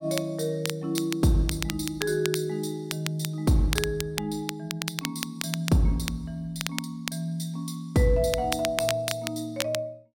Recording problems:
crackling; vinyl, SNR 6 dB

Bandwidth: 16.5 kHz